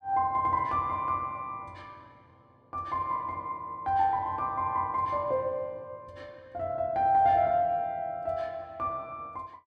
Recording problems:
none

